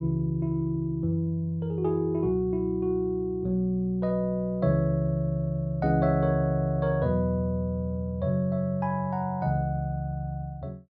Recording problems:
none

